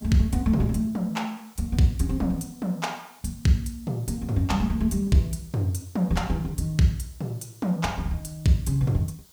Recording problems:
background hiss; SNR 26 dB

